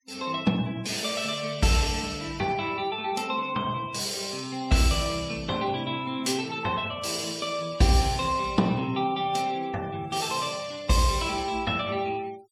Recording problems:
noise reduction artefacts; signal-to-artefact ratio 22 dB

